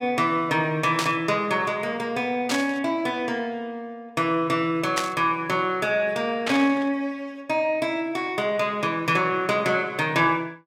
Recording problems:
static burst; 4 times, first at 1 s; peak +3 dB vs average level

